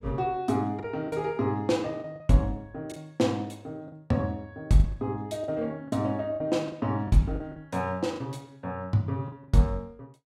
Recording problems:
lost packets; 7% of the sound replaced, filled with the last packet

